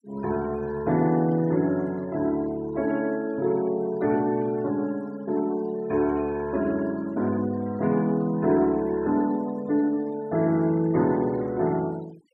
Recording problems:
denoising artefacts; signal-to-artefact ratio 23 dB

